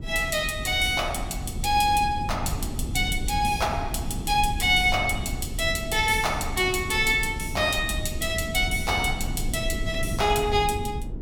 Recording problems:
rumble; below 160 Hz, SNR 8 dB

